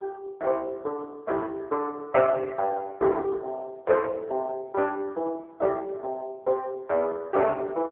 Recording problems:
phone line; 340 Hz to 2.6 kHz, AMR-NB

